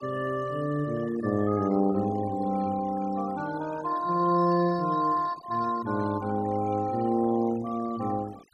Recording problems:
denoising artefacts; signal-to-artefact ratio 19 dB

